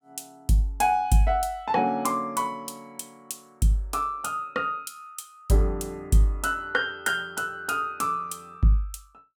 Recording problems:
none

